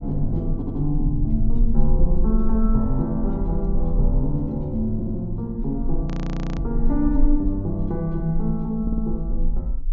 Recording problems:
treble missing; nothing above 7.1 kHz
low-frequency rumble; below 38 Hz, strongest tone 20 Hz, SNR 3 dB
audio stuttering; at 0.5 s, at 5 s and at 9 s
audio freezing; at 6 s for 0.5 s

